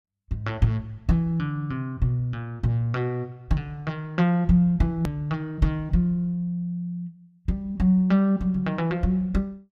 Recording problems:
edit click; at 5 s

